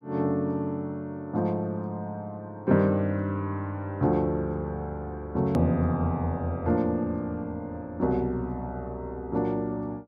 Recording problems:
edit click; at 5.5 s

